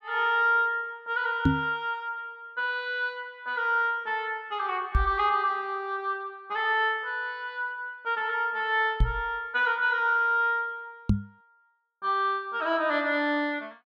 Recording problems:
microphone bump; 4 times, first at 1.5 s; peak +8 dB vs average level

